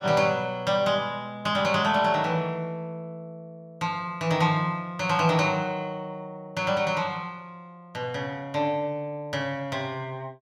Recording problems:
none

